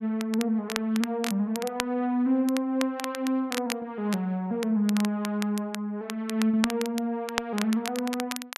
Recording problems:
crackle; vinyl, SNR 9 dB

